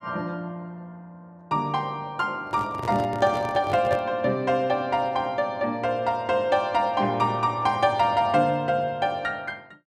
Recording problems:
microphone handling noise; from 2.5 to 4 s; peak -4 dB vs average level

